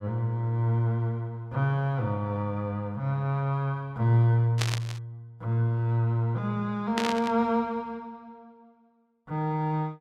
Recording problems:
static burst; at 4.5 s and at 7 s; peak +2 dB vs average level

